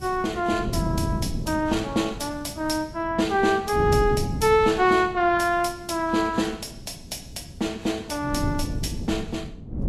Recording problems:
lossy codec; Vorbis, log-spectral distance 3 dB, nothing above 13.1 kHz
wind on the microphone; below 210 Hz, SNR 8 dB

